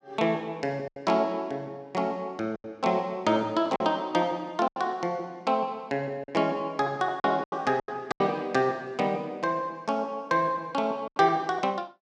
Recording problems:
lost packets; 6% of the sound replaced, filled with silence

